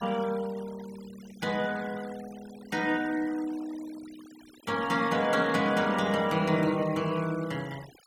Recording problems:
noise reduction artefacts; signal-to-artefact ratio 19 dB

